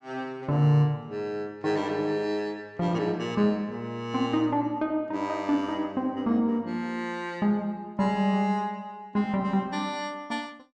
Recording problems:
none

